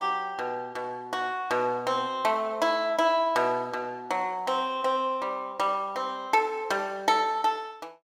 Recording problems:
none

